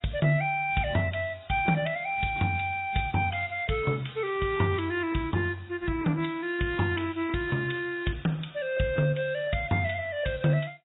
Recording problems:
codec artefacts; AAC, log-spectral distance 4 dB, nothing above 3.8 kHz

